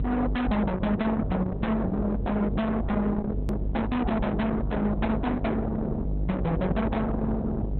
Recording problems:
codec artefacts; Opus, log-spectral distance 2 dB, nothing above 3.7 kHz
distorted audio; soft clipping, signal-to-distortion ratio 6 dB
electrical hum; 50 Hz, harmonics up to 450 Hz, SNR 4 dB
edit click; at 3.5 s

